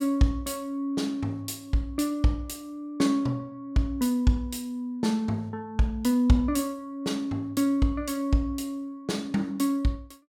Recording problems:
none

